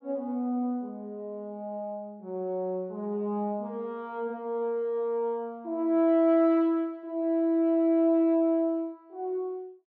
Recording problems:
none

